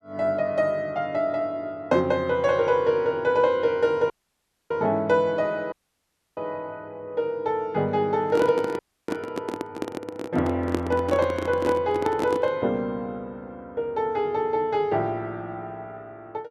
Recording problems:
dropout; at 4 s for 0.5 s, at 5.5 s for 0.5 s and at 9 s
microphone handling noise; from 8.5 to 13 s; peak +2 dB vs average level

